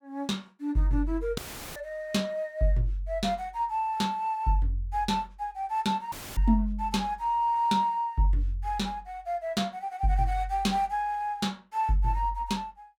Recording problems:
audio cutting out; at 1.5 s and at 6 s; filled with static

